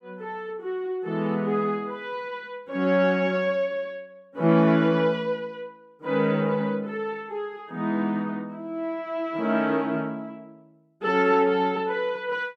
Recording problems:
none

